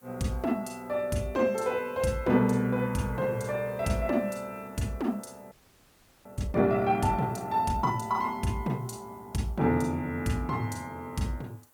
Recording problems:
background hiss; SNR 29 dB
frozen audio; at 5.5 s for 0.5 s

